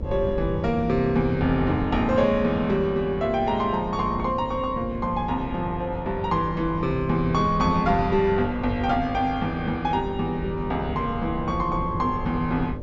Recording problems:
treble cut off; nothing above 8 kHz
electrical hum; 50 Hz, harmonics up to 600 Hz, SNR 13 dB
wind noise; below 140 Hz, SNR 12 dB

